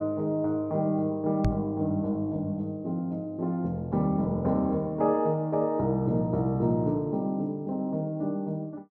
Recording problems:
microphone bump; at 1.5 s; peak +4 dB vs average level

